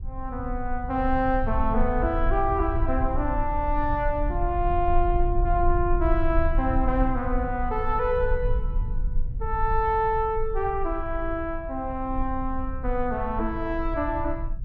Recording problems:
low-frequency rumble; below 54 Hz, strongest tone 20 Hz, SNR 4 dB

